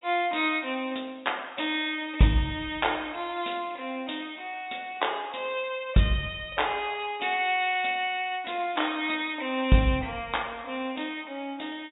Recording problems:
low-pass filter; nothing above 4 kHz

